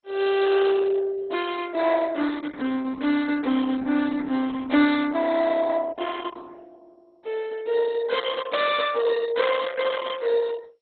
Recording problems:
codec artefacts; Opus, then MP2, log-spectral distance 4 dB, nothing above 3.9 kHz

